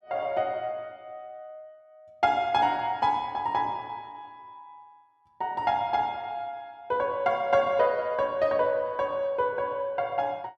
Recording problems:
none

